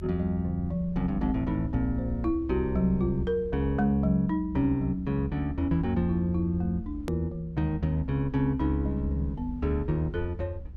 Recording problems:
low-frequency rumble; below 74 Hz, SNR 12 dB
edit click; at 7 s

